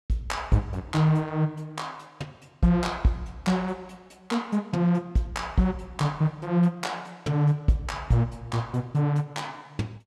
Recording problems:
none

